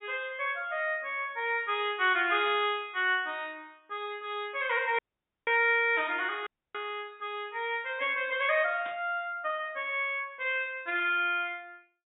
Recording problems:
treble cut off; nothing above 4 kHz
burst of static; at 2.5 s and at 9 s; peak -13 dB vs average level
dropout; at 5 s and at 6.5 s

